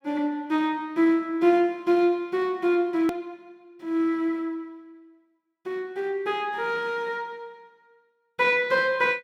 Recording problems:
hard cut with a click; at 3 s

